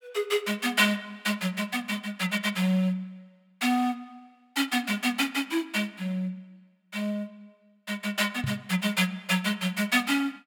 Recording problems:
microphone bump; at 8.5 s; peak 0 dB vs average level

